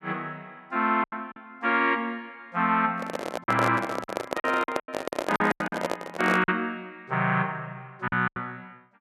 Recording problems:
packet loss; 8% of the sound replaced, filled with silence
microphone handling noise; from 3 to 6.5 s; peak +3 dB vs average level

